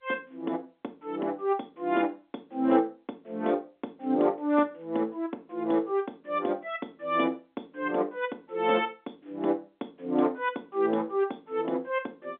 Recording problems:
phone line; 220 Hz to 3.7 kHz, G.711

